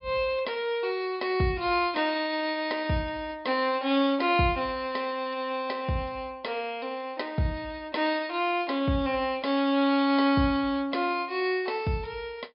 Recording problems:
low-pass filter; nothing above 5.5 kHz

